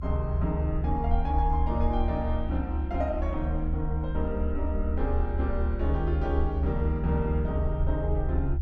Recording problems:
rumble; below 72 Hz, SNR -1 dB

